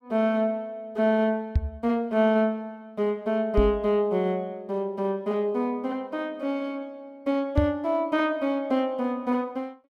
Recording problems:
microphone thump; at 1.5 s, at 3.5 s and at 7.5 s; peak +7 dB vs average level

